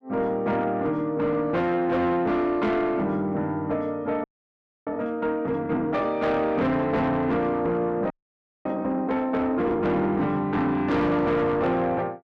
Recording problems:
distortion; soft clipping, signal-to-distortion ratio 10 dB
frozen audio; at 4 s for 0.5 s and at 8 s for 0.5 s

